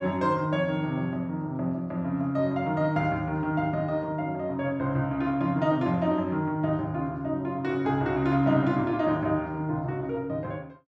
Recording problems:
none

